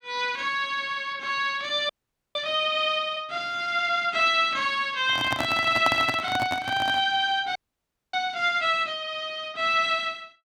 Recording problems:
frozen audio; at 2 s and at 7.5 s for 0.5 s
microphone handling noise; from 5 to 7 s; peak +1 dB vs average level

